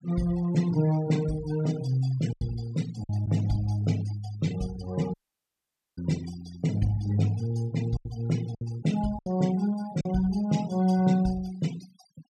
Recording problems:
denoising artefacts; signal-to-artefact ratio 18 dB
packet loss; 3% of the sound replaced, filled with silence
audio cutting out; at 5 s for 1 s

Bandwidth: 14.5 kHz